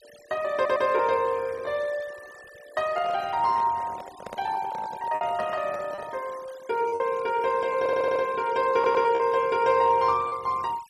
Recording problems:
noise reduction artefacts; signal-to-artefact ratio 22 dB
lost packets; 4% of the sound replaced, filled with repeated pitch periods
stutter; at 0.5 s, at 8 s and at 8.5 s
handling noise; from 2.5 to 6 s; peak -9 dB vs average level

